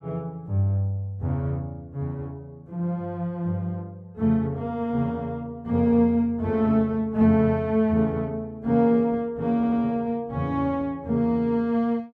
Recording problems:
stutter; at 9.5 s

